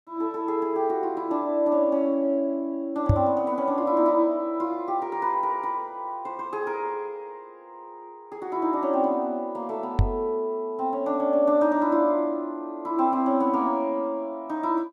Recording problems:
knock on the microphone; at 3 s and at 10 s; peak +8 dB vs average level

